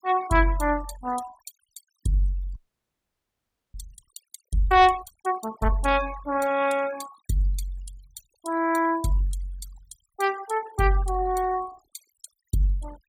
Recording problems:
noise reduction artefacts; signal-to-artefact ratio 18 dB
audio freezing; at 2.5 s for 1 s

